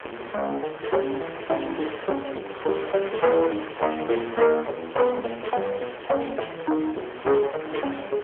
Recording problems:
phone line; 300 Hz to 3.2 kHz, AMR-NB
distortion; soft clipping, signal-to-distortion ratio 8 dB
wind noise; below 2.2 kHz, SNR 12 dB

